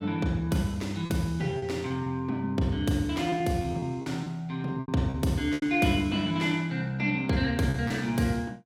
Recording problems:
lost packets; 6% of the sound replaced, filled with repeated pitch periods

